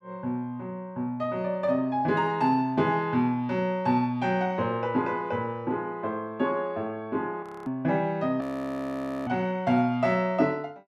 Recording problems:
audio freezing; at 7.5 s and at 8.5 s for 1 s

